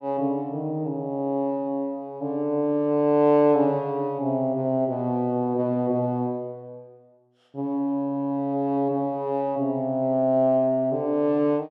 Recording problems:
none

